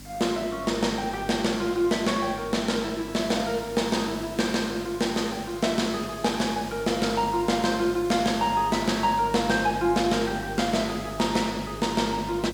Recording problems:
mains hum; 50 Hz, harmonics up to 300 Hz, SNR 16 dB
hiss; SNR 20 dB

